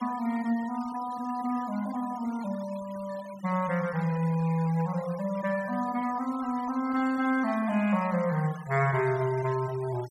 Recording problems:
denoising artefacts; signal-to-artefact ratio 19 dB

